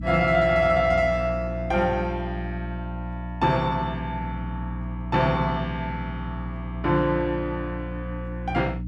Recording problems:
electrical hum; 60 Hz, harmonics up to 300 Hz, SNR 8 dB

